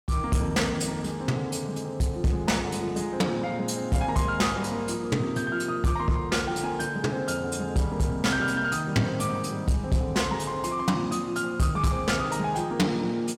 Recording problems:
distortion; soft clipping, signal-to-distortion ratio 10 dB

